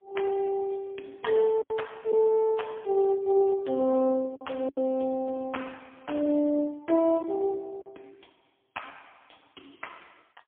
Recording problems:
telephone audio; 170 Hz to 3.4 kHz, AMR-NB, then MP3
lost packets; 3% of the sound replaced, filled with silence

